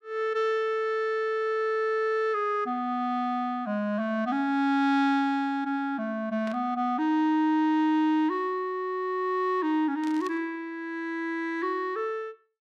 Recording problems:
static burst; at 6.5 s and at 10 s; peak -12 dB vs average level

